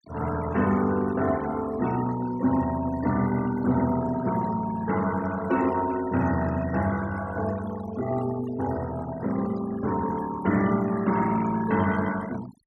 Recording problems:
denoising artefacts; signal-to-artefact ratio 15 dB

